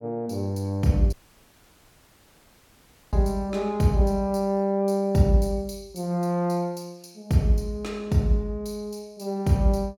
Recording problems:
audio cutting out; at 1 s for 2 s

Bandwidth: 17.5 kHz